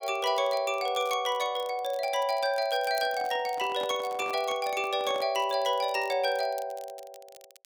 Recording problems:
crackling; vinyl, SNR 23 dB
microphone handling noise; from 3 to 5.5 s; peak -8 dB vs average level

